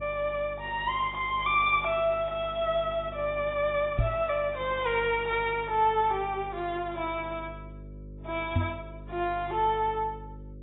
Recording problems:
codec artefacts; AAC, log-spectral distance 2 dB, nothing above 3.7 kHz
hum; 50 Hz, harmonics up to 550 Hz, SNR 17 dB
microphone thump; at 4 s and at 8.5 s; peak +5 dB vs average level

